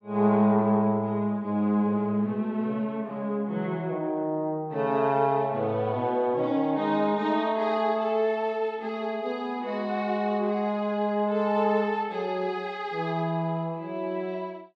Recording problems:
none

